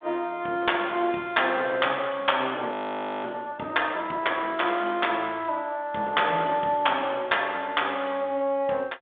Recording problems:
telephone audio; 280 Hz to 3.6 kHz, G.726
audio freezing; at 2.5 s for 0.5 s

